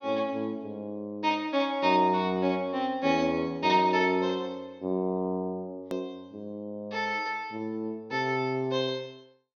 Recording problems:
treble missing; nothing above 6.2 kHz
edit click; at 6 s

